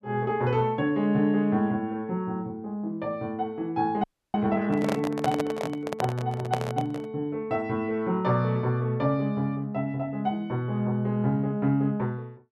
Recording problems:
frozen audio; at 4 s
handling noise; from 4.5 to 7 s; peak +3 dB vs average level

